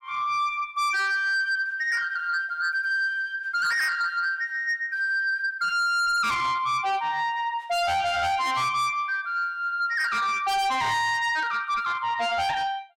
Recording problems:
distortion; soft clipping, signal-to-distortion ratio 8 dB

